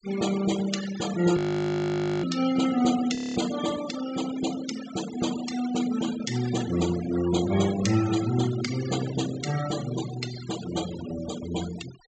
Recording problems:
treble cut off; nothing above 8 kHz
noise reduction artefacts; signal-to-artefact ratio 11 dB
audio freezing; at 1.5 s for 1 s and at 3 s

